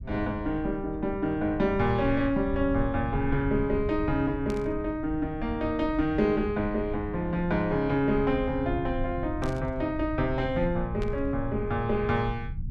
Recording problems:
rumble; below 98 Hz, SNR 10 dB
burst of static; at 4.5 s, at 9.5 s and at 11 s; peak -11 dB vs average level

